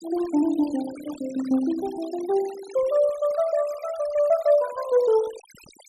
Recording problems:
denoising artefacts; signal-to-artefact ratio 19 dB

